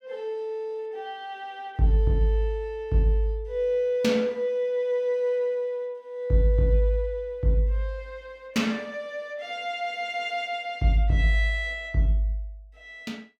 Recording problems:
none

